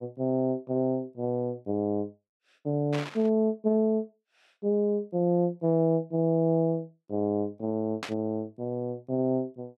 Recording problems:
static burst; at 3 s and at 8 s; peak -3 dB vs average level

